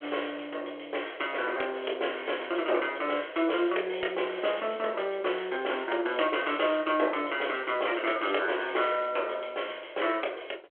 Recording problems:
telephone audio; 300 Hz to 3.3 kHz, G.726

